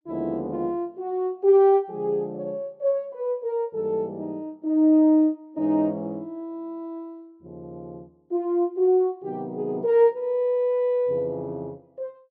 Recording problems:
none

